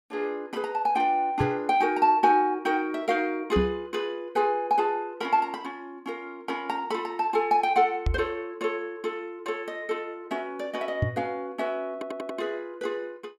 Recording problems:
microphone thump; 4 times, first at 1.5 s; peak +5 dB vs average level
audio stuttering; at 12 s

